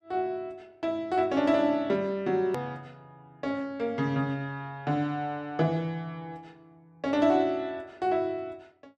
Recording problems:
edit click; at 2.5 s

